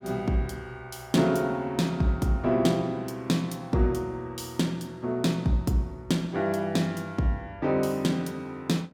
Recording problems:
none

